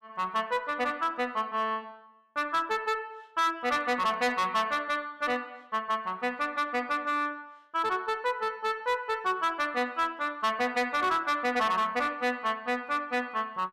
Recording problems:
distorted audio; hard clipping, signal-to-distortion ratio 11 dB

